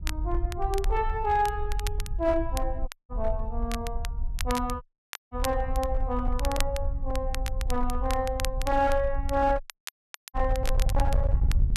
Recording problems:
distortion; hard clipping, signal-to-distortion ratio 12 dB
low-frequency rumble; below 62 Hz, SNR 2 dB
crackling; vinyl, SNR 11 dB
dropout; at 3 s, at 5 s and at 9.5 s for 0.5 s

